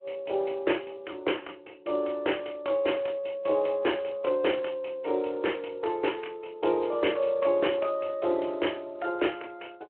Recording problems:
phone line; 300 Hz to 3.1 kHz, Speex

